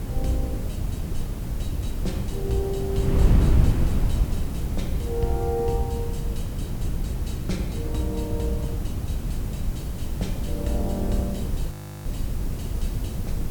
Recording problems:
hiss; slope +3 dB per octave, SNR 15 dB
wind on the microphone; below 130 Hz, SNR -3 dB
audio freezing; at 12 s

